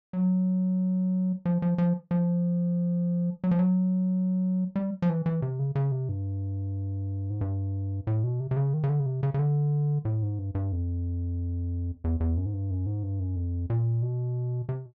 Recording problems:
treble cut off; nothing above 8 kHz

